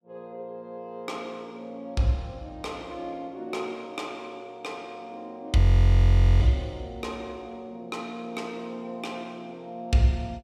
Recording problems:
audio freezing; at 5.5 s for 1 s

